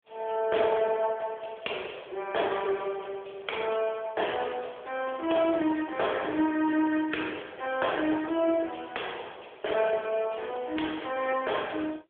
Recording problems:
phone line; 340 Hz to 3.5 kHz, AMR-NB

